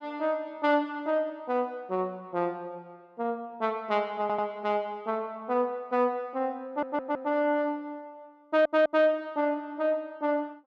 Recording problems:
audio stuttering; at 4 s, at 6.5 s and at 8.5 s

